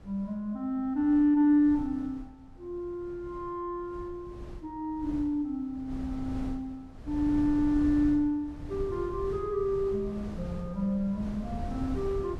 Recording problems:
wind on the microphone; below 170 Hz, SNR 12 dB

